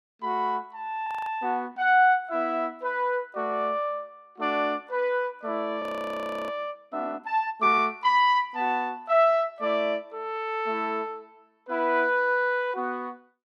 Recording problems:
frozen audio; at 1 s and at 6 s for 0.5 s

